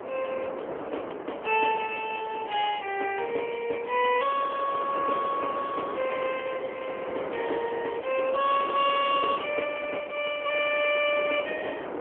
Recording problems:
phone line; 340 Hz to 3.2 kHz, AMR-NB
wind noise; below 850 Hz, SNR 9 dB

